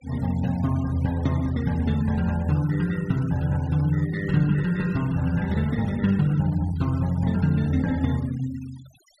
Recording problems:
denoising artefacts; signal-to-artefact ratio 22 dB

